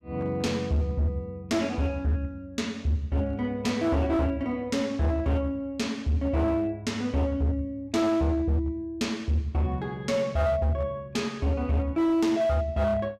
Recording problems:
distortion; hard clipping, signal-to-distortion ratio 11 dB

